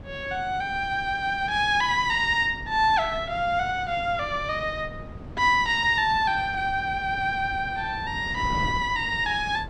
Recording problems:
wind on the microphone; below 280 Hz, SNR 15 dB

